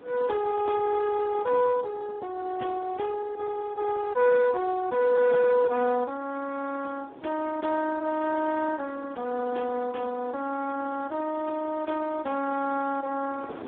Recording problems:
telephone audio; 240 Hz to 2 kHz, Speex
wind noise; below 690 Hz, SNR 20 dB

